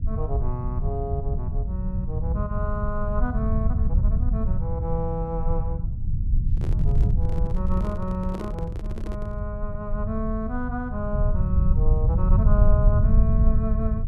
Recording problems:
low-frequency rumble; below 90 Hz, SNR -6 dB
handling noise; from 6.5 to 9.5 s; peak 0 dB vs average level

